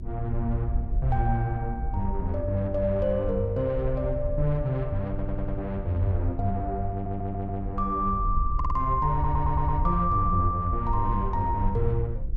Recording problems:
electrical hum; 50 Hz, harmonics up to 350 Hz, SNR 20 dB
wind on the microphone; below 70 Hz, SNR 5 dB
stutter; 4 times, first at 5 s

